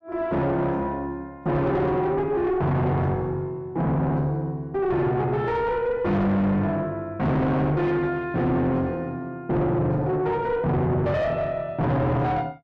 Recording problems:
distorted audio; soft clipping, signal-to-distortion ratio 6 dB

